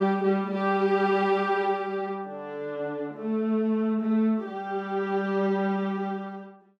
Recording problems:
none

